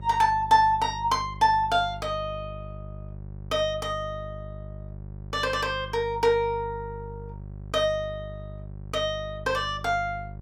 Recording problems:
mains hum; 50 Hz, harmonics up to 600 Hz, SNR 14 dB

